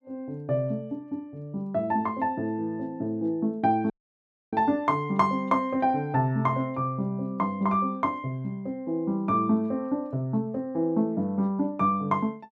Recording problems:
audio cutting out; at 4 s for 0.5 s

